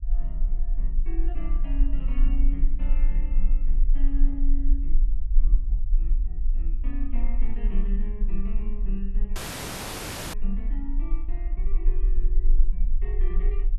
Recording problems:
low-frequency rumble; below 34 Hz, strongest tone 22 Hz, SNR -12 dB
audio cutting out; at 9.5 s for 1 s

